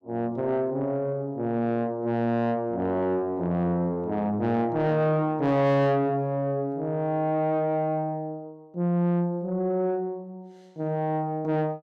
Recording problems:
distortion; soft clipping, signal-to-distortion ratio 10 dB

